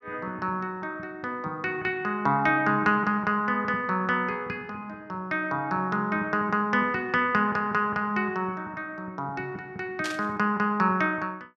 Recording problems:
static burst; at 10 s; peak -3 dB vs average level

